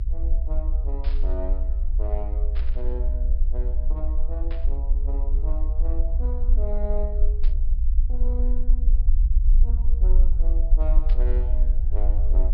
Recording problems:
low-pass filter; nothing above 5.5 kHz
rumble; below 52 Hz, strongest tone 22 Hz, SNR -14 dB
static burst; 5 times, first at 1 s; peak -2 dB vs average level

